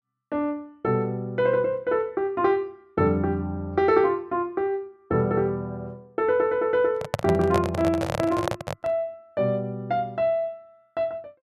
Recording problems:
handling noise; from 7 to 9 s; peak +3 dB vs average level

